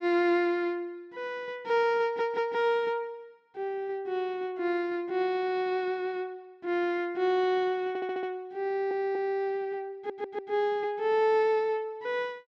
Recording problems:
audio stuttering; 4 times, first at 2 s

